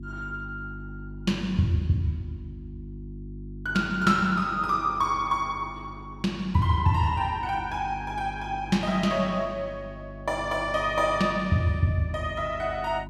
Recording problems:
electrical hum; 50 Hz, harmonics up to 350 Hz, SNR 15 dB

